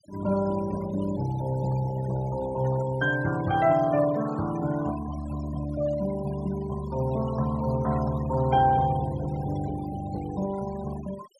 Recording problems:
denoising artefacts; signal-to-artefact ratio 16 dB

